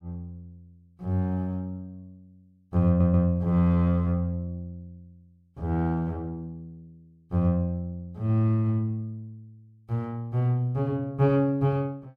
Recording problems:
stutter; at 3 s

